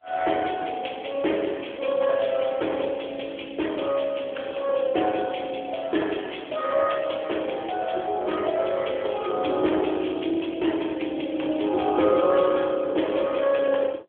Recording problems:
telephone audio; 280 Hz to 3.4 kHz, AMR-NB

